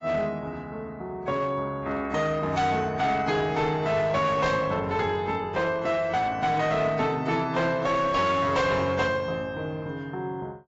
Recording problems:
lossy codec; AAC, log-spectral distance 2 dB, nothing above 7.6 kHz
distorted audio; hard clipping, signal-to-distortion ratio 11 dB
static burst; at 2.5 s and at 4.5 s; peak -9 dB vs average level

